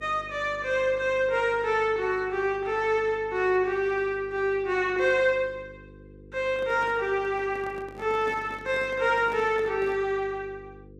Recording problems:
electrical hum; 50 Hz, harmonics up to 500 Hz, SNR 22 dB
microphone handling noise; from 6.5 to 10 s; peak -11 dB vs average level

